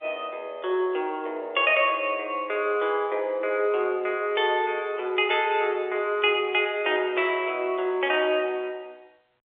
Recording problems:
phone line; 320 Hz to 3.6 kHz, G.711

